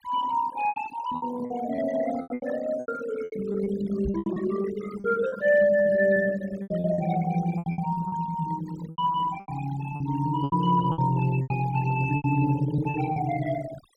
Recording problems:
denoising artefacts; signal-to-artefact ratio 16 dB
lost packets; 13% of the sound replaced, filled with repeated pitch periods
microphone bump; at 4 s; peak -2 dB vs average level

